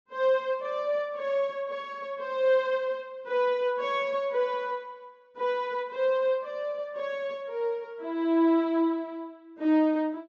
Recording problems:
treble missing; nothing above 8 kHz

